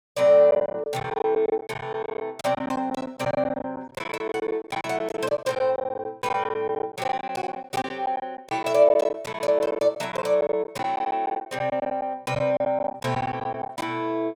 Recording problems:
packet loss; 16% of the sound replaced, filled with silence

